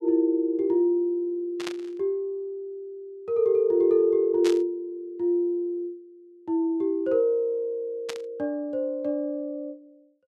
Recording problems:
static burst; at 1.5 s, at 4.5 s and at 8 s; peak -4 dB vs average level

